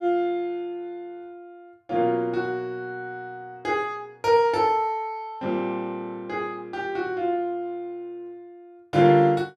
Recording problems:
none

